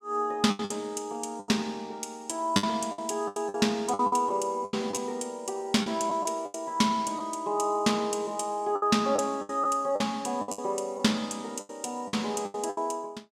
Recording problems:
packet loss; 11% of the sound replaced, filled with the last packet

